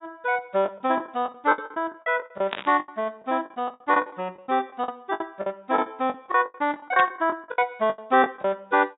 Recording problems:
treble cut off; nothing above 4 kHz
lost packets; 17% of the sound replaced, filled with the last packet
burst of static; at 2.5 s and at 7 s; peak 0 dB vs average level

